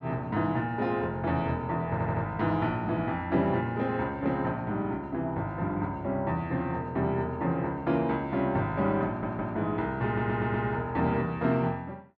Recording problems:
audio stuttering; at 2 s, at 9 s and at 10 s

